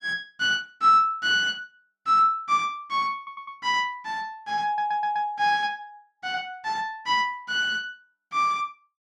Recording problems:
audio stuttering; at 3 s and at 4.5 s

